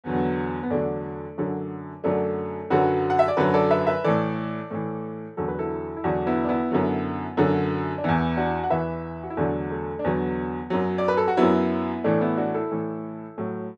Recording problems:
none

